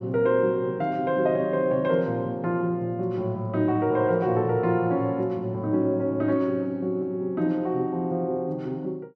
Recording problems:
none

